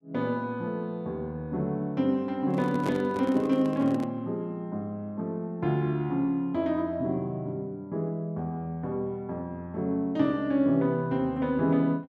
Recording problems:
microphone handling noise; from 2.5 to 4 s; peak -1 dB vs average level

